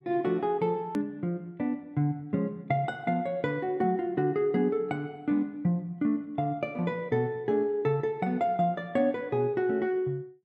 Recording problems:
edit click; at 1 s

